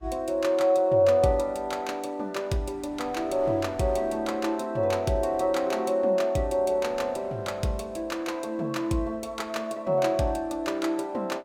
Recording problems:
wind noise; below 1.2 kHz, SNR 24 dB

